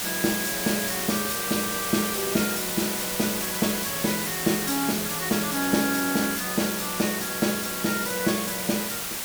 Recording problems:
hiss; slope 0 dB per octave, SNR 0 dB

